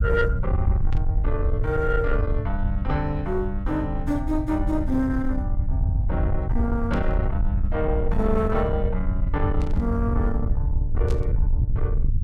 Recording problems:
distortion; soft clipping, signal-to-distortion ratio 12 dB
low-frequency rumble; below 86 Hz, SNR -1 dB
burst of static; 4 times, first at 1 s; peak -10 dB vs average level

